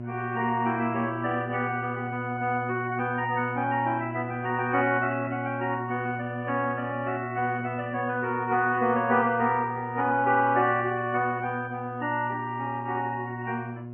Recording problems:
treble cut off; nothing above 3 kHz
codec artefacts; AAC, then Vorbis, log-spectral distance 2 dB
electrical hum; 60 Hz, harmonics up to 720 Hz, SNR 9 dB

